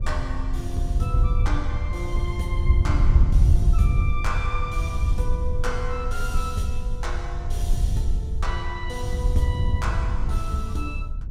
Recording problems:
low-frequency rumble; below 46 Hz, strongest tone 20 Hz, SNR 5 dB
wind on the microphone; below 84 Hz, SNR -6 dB

